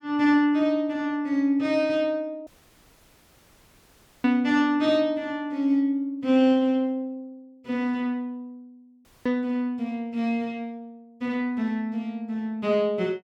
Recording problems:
audio cutting out; at 2.5 s for 2 s and at 9 s

